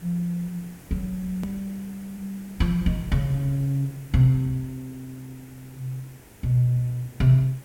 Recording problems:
hiss; SNR 22 dB
edit click; at 1.5 s

